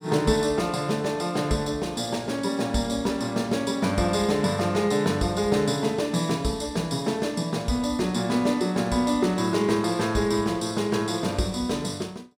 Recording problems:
none

